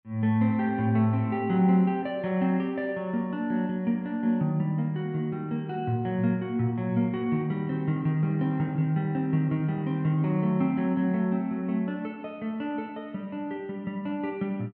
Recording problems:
none

